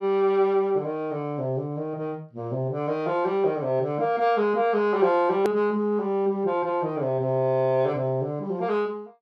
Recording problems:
hard cut with a click; at 5.5 s

